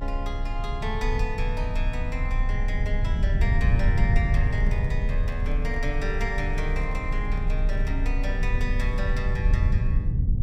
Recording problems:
rumble; below 80 Hz, strongest tone 30 Hz, SNR -6 dB
microphone handling noise; from 4.5 to 8 s; peak -10 dB vs average level

